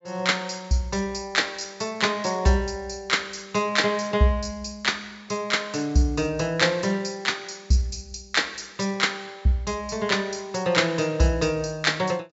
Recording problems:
treble cut off; nothing above 8 kHz

